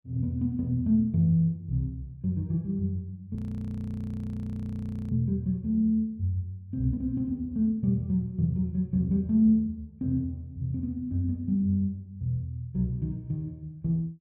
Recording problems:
frozen audio; at 3.5 s for 2 s

